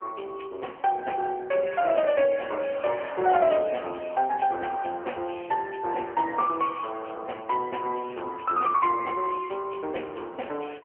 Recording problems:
telephone audio; 300 Hz to 3 kHz, AMR-NB

